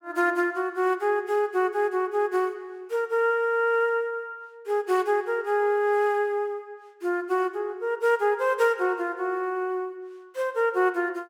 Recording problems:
none

